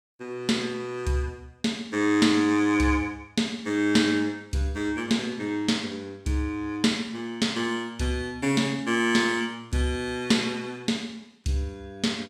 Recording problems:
none

